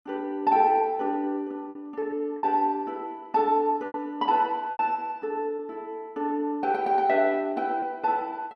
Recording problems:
packet loss; 4% of the sound replaced, filled with repeated pitch periods

